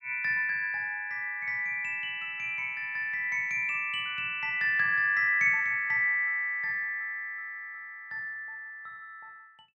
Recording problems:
none

